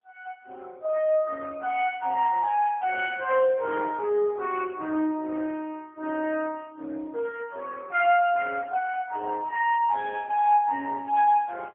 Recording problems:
phone line; 260 Hz to 3.3 kHz, AMR-NB, then MP3

